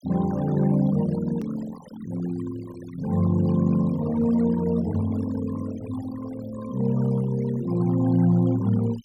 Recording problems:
denoising artefacts; signal-to-artefact ratio 17 dB
click at an edit; at 1.5 s

